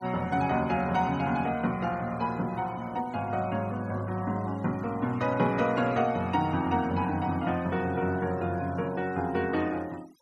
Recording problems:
noise reduction artefacts; signal-to-artefact ratio 23 dB

